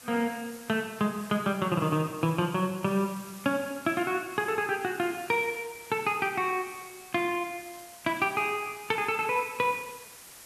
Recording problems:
background hiss; slope 0 dB per octave, SNR 17 dB

